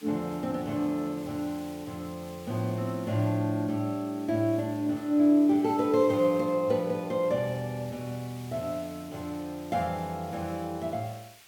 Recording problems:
background hiss; SNR 22 dB

